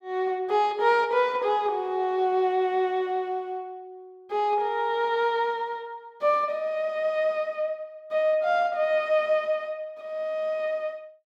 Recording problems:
none

